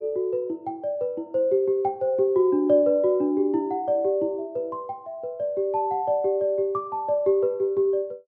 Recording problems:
none

